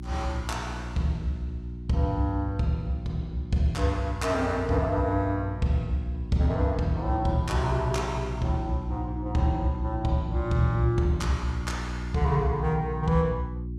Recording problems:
hum; 60 Hz, harmonics up to 360 Hz, SNR 8 dB

